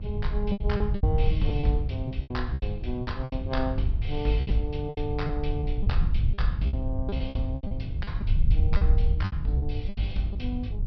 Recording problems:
treble cut off; nothing above 5.5 kHz
hum; 50 Hz, harmonics up to 500 Hz, SNR 7 dB
rumble; below 82 Hz, SNR -3 dB
lost packets; 14% of the sound replaced, filled with repeated pitch periods

